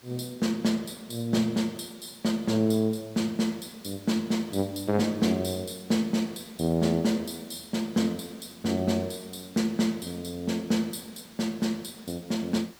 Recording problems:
hiss; slope -2 dB per octave, SNR 23 dB

